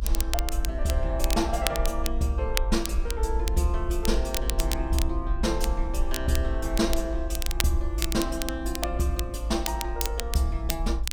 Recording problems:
low-frequency rumble; below 56 Hz, SNR 2 dB
wind on the microphone; below 240 Hz, SNR 17 dB
crackle; vinyl, SNR 5 dB

